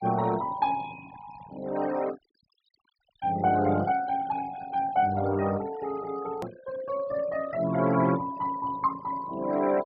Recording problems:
low-pass filter; nothing above 5.5 kHz
noise reduction artefacts; signal-to-artefact ratio 17 dB
hard cut with a click; at 6.5 s

